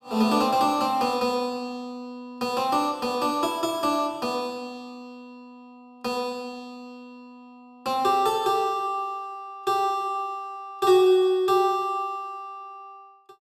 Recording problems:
none

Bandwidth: 15 kHz